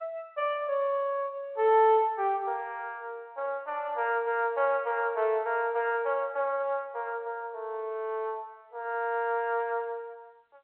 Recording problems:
telephone audio; 320 Hz to 3.5 kHz, G.711

